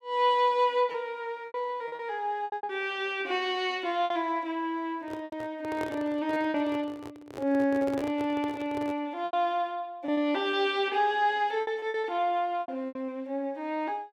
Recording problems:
lost packets; 8% of the sound replaced, filled with repeated pitch periods
microphone handling noise; from 5 to 9 s; peak -4 dB vs average level

